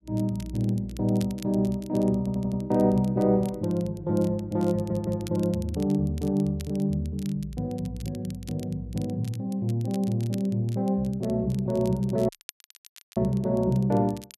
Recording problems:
crackle; vinyl, SNR 23 dB
audio stuttering; at 2 s and at 4.5 s
dropout; at 12 s for 1 s

